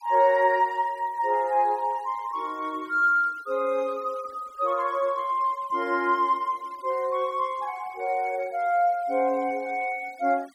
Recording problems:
noise reduction artefacts; signal-to-artefact ratio 27 dB

